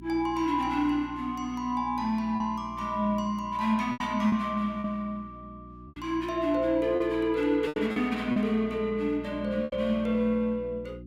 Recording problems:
electrical hum; 60 Hz, harmonics up to 360 Hz, SNR 17 dB
lost packets; 4% of the sound replaced, filled with repeated pitch periods

